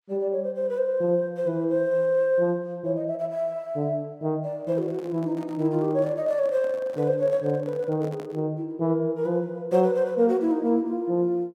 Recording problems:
handling noise; from 4.5 to 8.5 s; peak -13 dB vs average level

